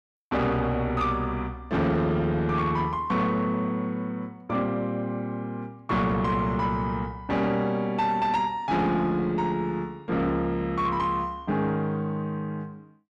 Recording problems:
distortion; soft clipping, signal-to-distortion ratio 12 dB

